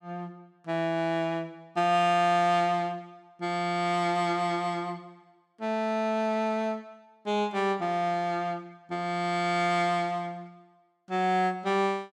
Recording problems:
none

